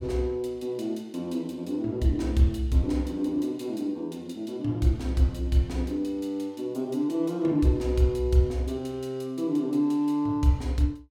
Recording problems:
none

